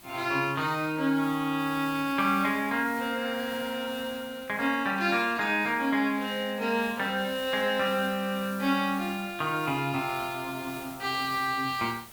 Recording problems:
hiss; slope -2 dB per octave, SNR 18 dB

